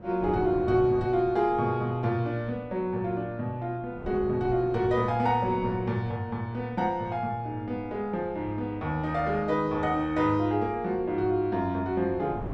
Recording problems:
wind on the microphone; below 450 Hz, SNR 16 dB

